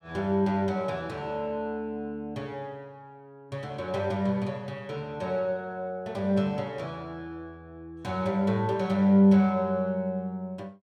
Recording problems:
none

